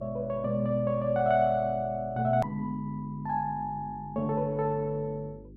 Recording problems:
mains hum; 50 Hz, harmonics up to 400 Hz, SNR 20 dB
edit click; at 2.5 s

